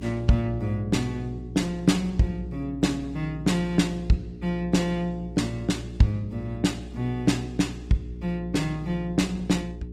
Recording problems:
lossy codec; Opus, log-spectral distance 2 dB
hum; 60 Hz, harmonics up to 420 Hz, SNR 12 dB

